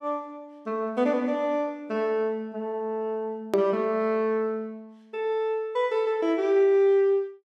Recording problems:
edit click; at 3.5 s

